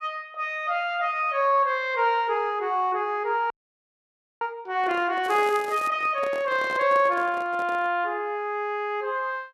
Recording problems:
frozen audio; at 3.5 s for 1 s
handling noise; from 5 to 8 s; peak -8 dB vs average level
crackle; at 5 s; loose cable, SNR 20 dB

